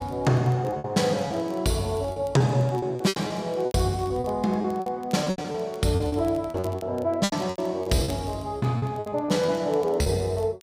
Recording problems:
crackle; vinyl, SNR 27 dB
lost packets; 13% of the sound replaced, filled with repeated pitch periods

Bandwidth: 15.5 kHz